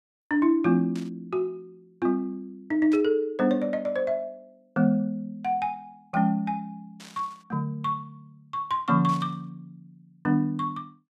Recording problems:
burst of static; 4 times, first at 1 s; peak -13 dB vs average level

